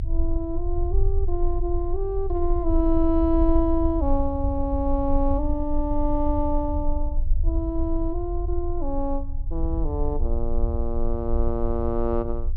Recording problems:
treble cut off; nothing above 5.5 kHz
rumble; below 54 Hz, strongest tone 20 Hz, SNR 2 dB

